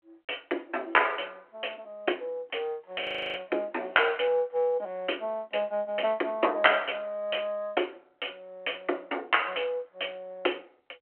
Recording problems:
telephone audio; 260 Hz to 3.2 kHz, G.726
frozen audio; at 3 s

